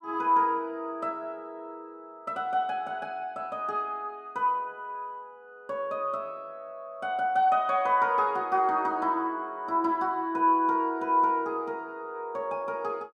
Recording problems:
none

